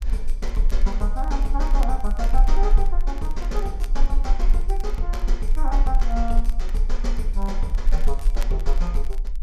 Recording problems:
rumble; below 36 Hz, strongest tone 20 Hz, SNR -6 dB
crackle; vinyl, SNR 18 dB

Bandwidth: 14.5 kHz